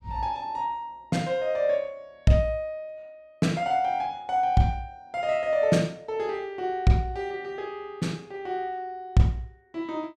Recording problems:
none

